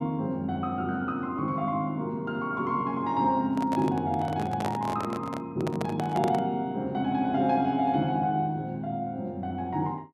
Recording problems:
microphone handling noise; from 3.5 to 6.5 s; peak 0 dB vs average level

